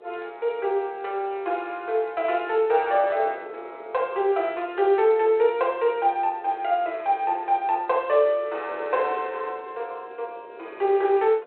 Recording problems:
phone line; 340 Hz to 3.2 kHz, G.726
wind noise; below 580 Hz, SNR 21 dB

